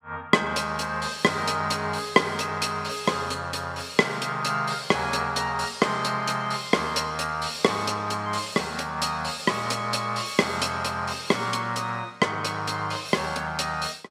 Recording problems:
none

